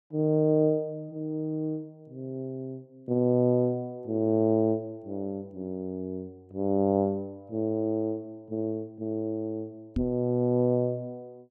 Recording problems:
microphone bump; at 10 s; peak +2 dB vs average level

